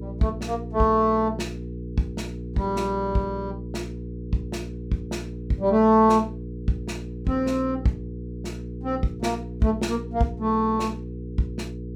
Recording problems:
hum; 60 Hz, harmonics up to 480 Hz, SNR 10 dB

